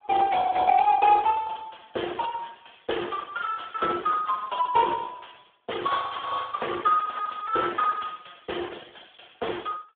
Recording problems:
telephone audio; 280 Hz to 3.6 kHz, Speex

